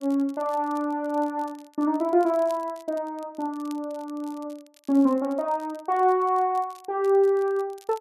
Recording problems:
crackling; vinyl, SNR 29 dB

